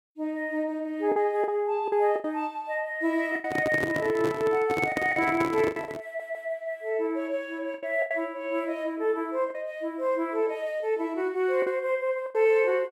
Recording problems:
lost packets; 6% of the sound replaced, filled with the last packet
handling noise; from 3.5 to 6 s; peak +1 dB vs average level
audio stuttering; at 6 s

